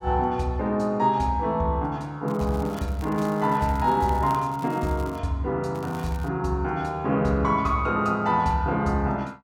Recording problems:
crackling; from 2.5 to 5 s and at 6 s; loose cable, SNR 23 dB

